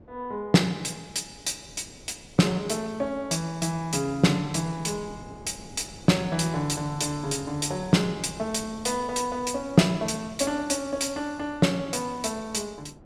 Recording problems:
wind noise; below 410 Hz, SNR 21 dB

